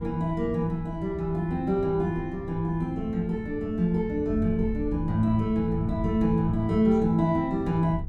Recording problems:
hum; 50 Hz, harmonics up to 800 Hz, SNR 23 dB
wind noise; below 100 Hz, SNR 12 dB

